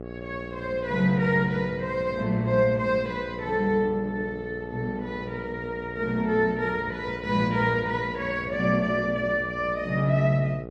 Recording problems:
hum; 60 Hz, harmonics up to 1.4 kHz, SNR 12 dB

